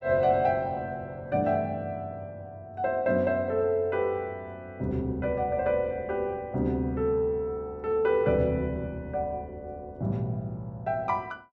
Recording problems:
none

